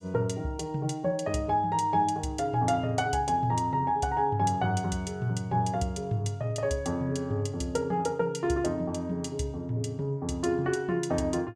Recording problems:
none

